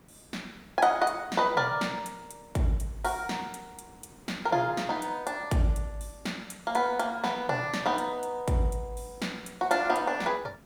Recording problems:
hiss; slope -6 dB per octave, SNR 26 dB

